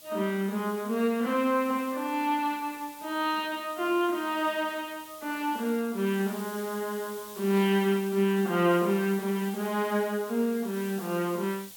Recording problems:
hiss; SNR 17 dB

